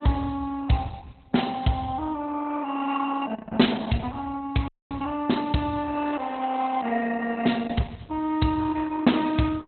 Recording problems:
codec artefacts; Opus, log-spectral distance 4 dB, nothing above 4.1 kHz
audio freezing; at 4.5 s
crackle; at 6 s and at 6.5 s; loose cable, SNR 27 dB

